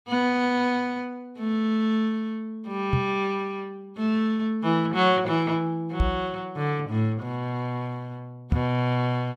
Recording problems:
knock on the microphone; at 3 s, at 6 s and at 8.5 s; peak +6 dB vs average level

